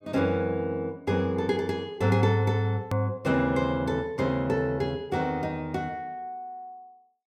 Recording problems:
click at an edit; at 3 s

